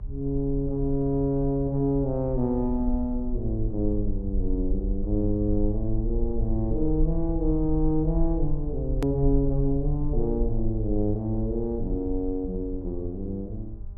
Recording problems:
hum; 50 Hz, harmonics up to 1 kHz, SNR 22 dB
rumble; below 48 Hz, SNR 6 dB
hard cut with a click; at 9 s

